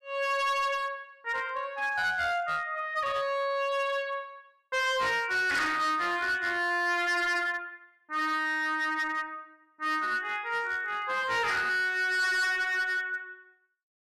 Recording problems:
distortion; hard clipping, uneven, signal-to-distortion ratio 10 dB

